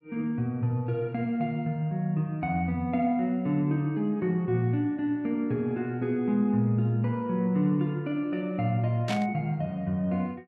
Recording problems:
burst of static; at 9 s; peak -3 dB vs average level

